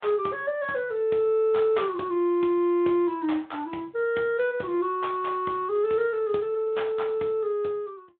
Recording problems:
phone line; 220 Hz to 3.7 kHz, Speex

